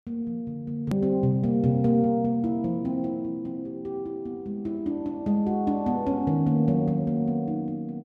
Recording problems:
edit click; at 1 s

